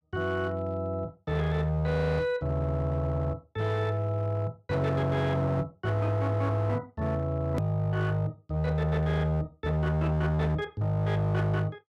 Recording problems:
distorted audio; hard clipping, signal-to-distortion ratio 11 dB
click at an edit; at 7.5 s

